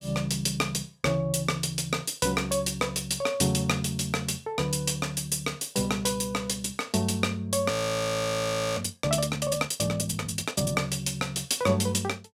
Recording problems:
frozen audio; at 7.5 s for 1 s

